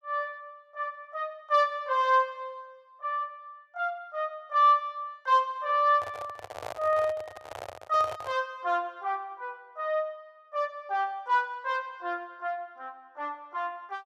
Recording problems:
microphone handling noise; from 6 to 8.5 s; peak -5 dB vs average level

